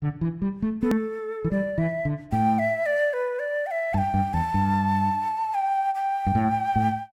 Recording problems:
edit click; at 1 s

